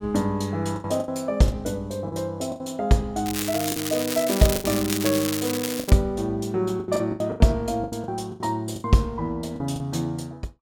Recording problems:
lost packets; 11% of the sound replaced, filled with the last packet
crackle; from 3.5 to 6 s; loose cable, SNR 4 dB

